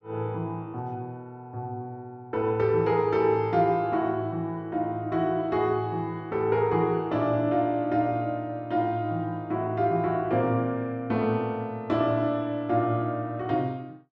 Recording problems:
none

